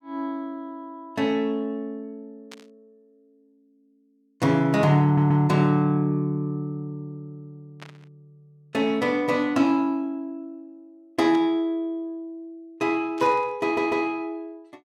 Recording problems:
burst of static; 4 times, first at 2.5 s; peak -14 dB vs average level
stutter; at 5 s and at 14 s

